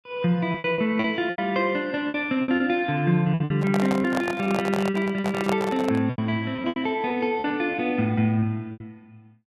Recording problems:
lost packets; 12% of the sound replaced, filled with repeated pitch periods
handling noise; from 3.5 to 6 s; peak 0 dB vs average level

